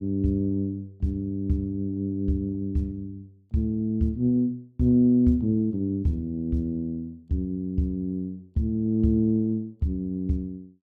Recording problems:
none

